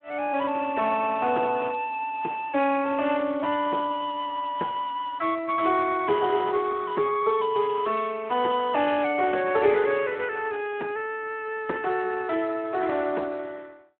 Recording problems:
telephone audio; 300 Hz to 2.9 kHz, Speex

